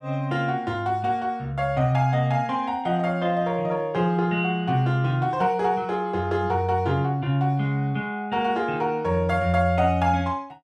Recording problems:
none

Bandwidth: 14 kHz